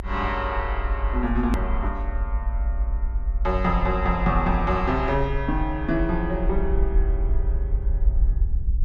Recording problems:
rumble; below 56 Hz, SNR 1 dB
click at an edit; at 1.5 s

